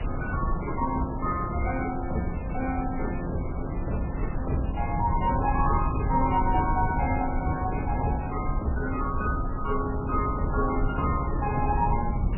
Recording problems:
lossy codec; MP3, log-spectral distance 10 dB, nothing above 2.5 kHz
background hiss; SNR 9 dB
rumble; below 110 Hz, SNR 3 dB

